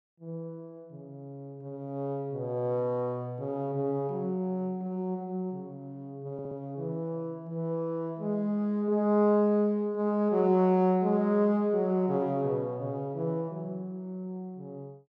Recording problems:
audio stuttering; at 6.5 s

